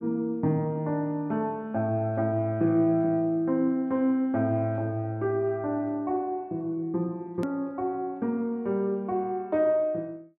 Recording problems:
click at an edit; at 7.5 s

